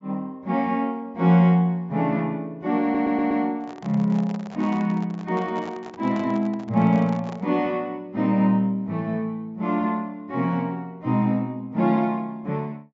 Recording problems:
treble cut off; nothing above 8 kHz
stutter; at 3 s
microphone handling noise; from 3.5 to 7.5 s; peak -11 dB vs average level

